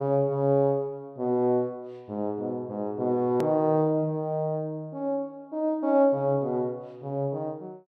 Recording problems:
click at an edit; at 3.5 s

